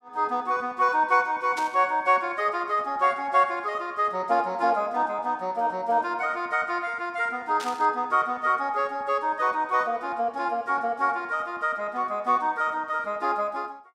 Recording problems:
burst of static; at 1.5 s and at 7.5 s; peak -7 dB vs average level

